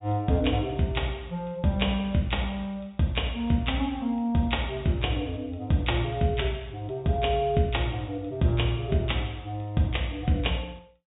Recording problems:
treble cut off; nothing above 4 kHz

